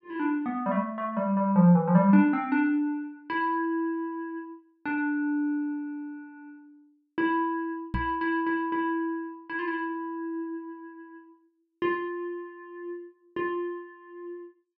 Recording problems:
microphone bump; at 8 s; peak 0 dB vs average level

